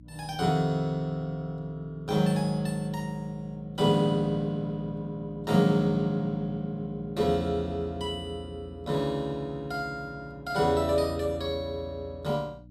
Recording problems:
hum; 60 Hz, harmonics up to 300 Hz, SNR 21 dB

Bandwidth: 15.5 kHz